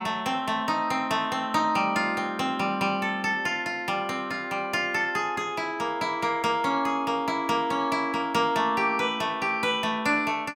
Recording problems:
none

